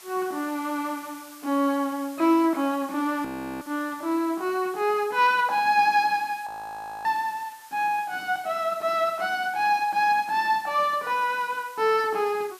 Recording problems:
hiss; SNR 22 dB
audio freezing; at 3.5 s and at 6.5 s for 0.5 s

